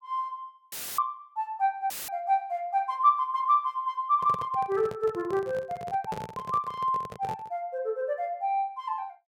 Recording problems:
audio cutting out; at 0.5 s and at 2 s; filled with static
microphone handling noise; from 4 to 7.5 s; peak -4 dB vs average level

